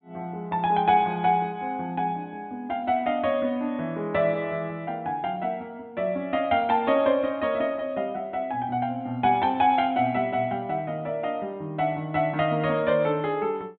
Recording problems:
treble cut off; nothing above 4 kHz

